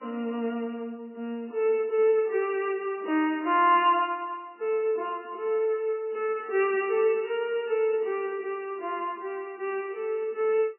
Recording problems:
codec artefacts; MP3, log-spectral distance 2 dB, nothing above 2.8 kHz

